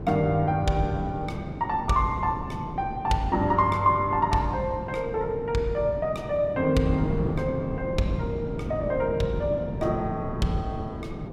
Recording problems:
wind on the microphone; below 310 Hz, SNR 8 dB

